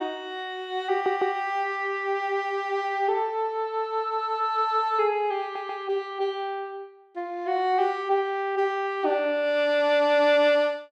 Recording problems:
audio stuttering; at 1 s and at 5.5 s

